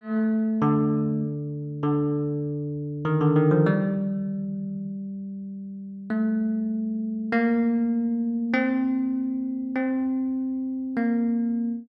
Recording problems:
none

